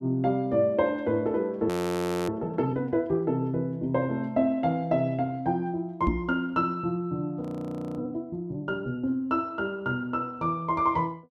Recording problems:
frozen audio; at 1.5 s for 0.5 s and at 7.5 s for 0.5 s
microphone bump; at 6 s; peak +5 dB vs average level

